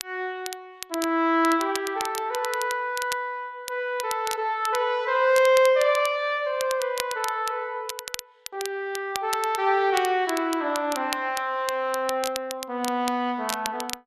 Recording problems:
crackle; vinyl, SNR 11 dB

